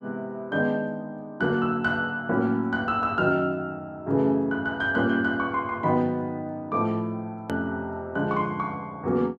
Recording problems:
click at an edit; at 7.5 s

